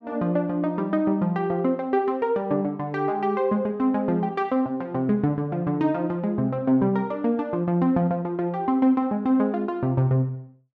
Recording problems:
none

